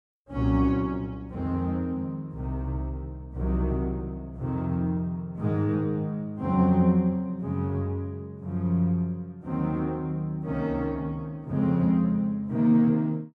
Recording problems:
none

